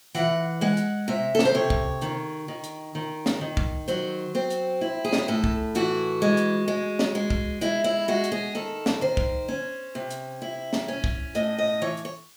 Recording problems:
hiss; slope +2 dB per octave, SNR 26 dB

